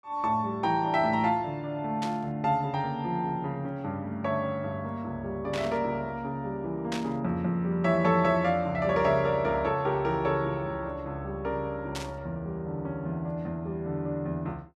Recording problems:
burst of static; 4 times, first at 2 s; peak -3 dB vs average level

